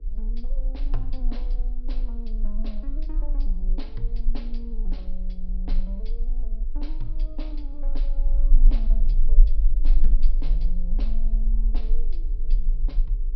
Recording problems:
treble missing; nothing above 5.5 kHz
hum; 60 Hz, harmonics up to 480 Hz, SNR 17 dB
low-frequency rumble; below 34 Hz, strongest tone 18 Hz, SNR -15 dB

